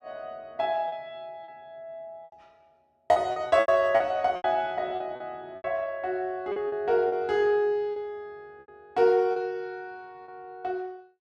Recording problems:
lost packets; 10% of the sound replaced, filled with repeated pitch periods

